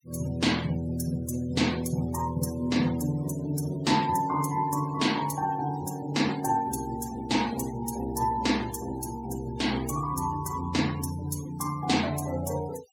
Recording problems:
denoising artefacts; signal-to-artefact ratio 16 dB

